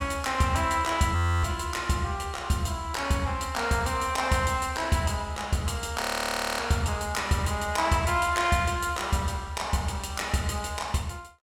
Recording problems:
audio freezing; at 1 s and at 6 s for 0.5 s

